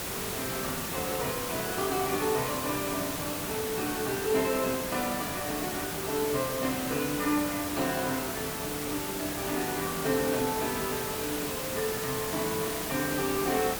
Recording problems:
background hiss; slope -3 dB per octave, SNR 1 dB

